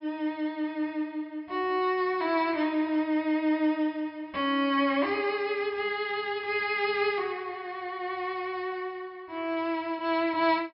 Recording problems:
treble cut off; nothing above 5.5 kHz

